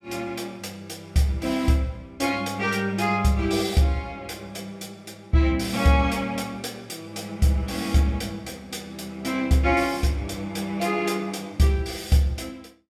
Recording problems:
none

